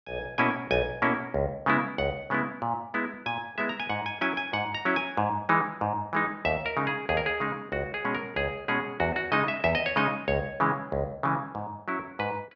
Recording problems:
none

